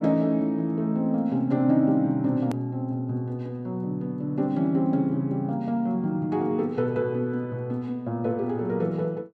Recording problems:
click at an edit; at 2.5 s

